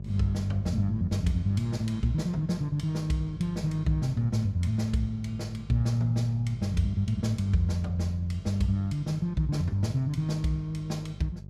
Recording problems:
hum; 50 Hz, harmonics up to 400 Hz, SNR 13 dB

